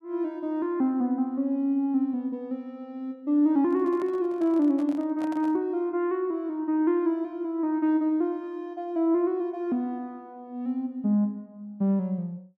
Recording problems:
handling noise; from 3.5 to 5.5 s; peak -11 dB vs average level

